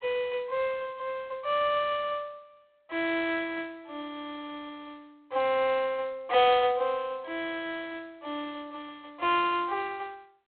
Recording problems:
telephone audio; 340 Hz to 3.9 kHz, G.726

